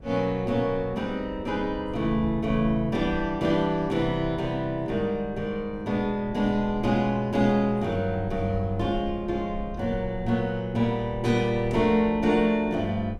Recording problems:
low-frequency rumble; below 100 Hz, SNR 16 dB

